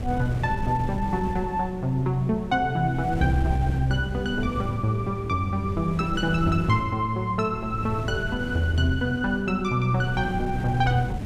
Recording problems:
wind noise; below 200 Hz, SNR 9 dB

